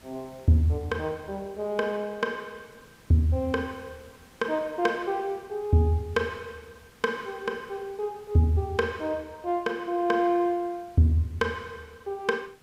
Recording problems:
background hiss; slope -3 dB per octave, SNR 27 dB

